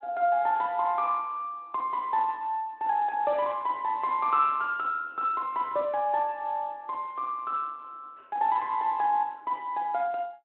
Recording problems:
phone line; 260 Hz to 3.6 kHz, Speex

